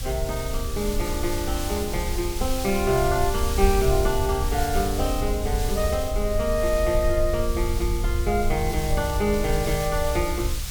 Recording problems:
hiss; slope +2 dB per octave, SNR 9 dB
rumble; below 70 Hz, SNR 4 dB

